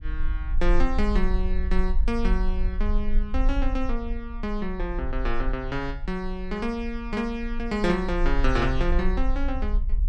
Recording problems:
rumble; below 42 Hz, strongest tone 18 Hz, SNR 1 dB

